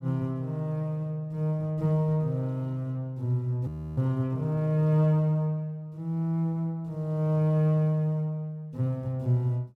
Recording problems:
audio freezing; at 3.5 s

